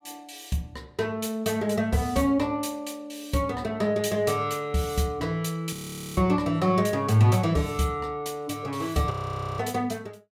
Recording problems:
audio freezing; at 5.5 s and at 9 s

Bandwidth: 16 kHz